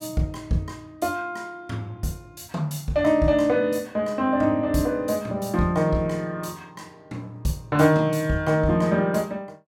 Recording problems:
none

